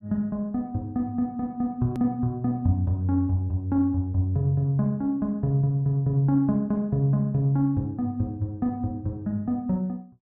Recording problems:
edit click; at 2 s

